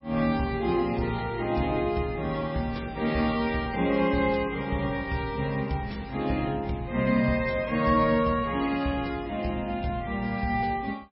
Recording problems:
lossy compression; MP3, log-spectral distance 3 dB, nothing above 5.3 kHz

